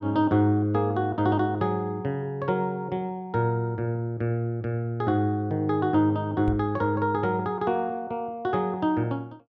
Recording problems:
knock on the microphone; at 6.5 s; peak -3 dB vs average level

